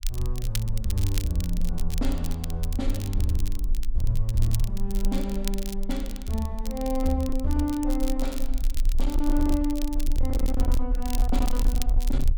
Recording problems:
distortion; hard clipping, signal-to-distortion ratio 12 dB
rumble; below 38 Hz, strongest tone 24 Hz, SNR 2 dB
crackling; vinyl, SNR 11 dB

